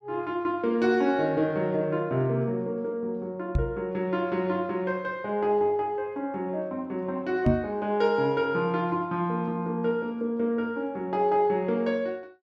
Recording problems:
knock on the microphone; at 3.5 s and at 7.5 s; peak +8 dB vs average level

